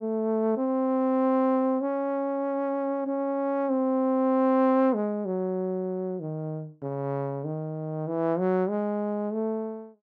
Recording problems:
none

